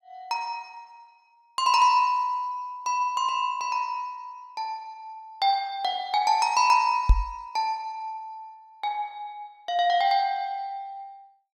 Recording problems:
microphone bump; at 7 s; peak +9 dB vs average level

